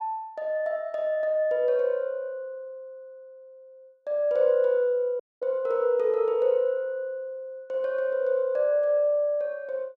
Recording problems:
audio cutting out; at 5 s

